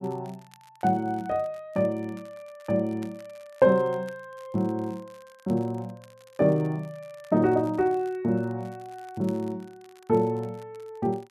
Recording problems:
crackle; vinyl, SNR 30 dB

